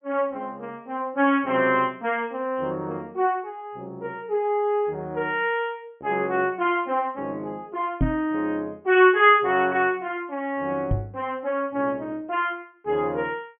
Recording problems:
treble cut off; nothing above 3.2 kHz
microphone thump; at 8 s and at 11 s; peak +4 dB vs average level

